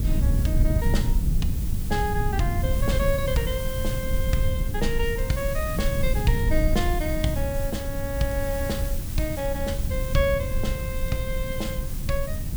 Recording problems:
hiss; slope -1 dB per octave, SNR 9 dB
rumble; below 100 Hz, SNR -1 dB
crackle; from 5 to 7 s and from 8 to 12 s; loose cable, SNR 24 dB

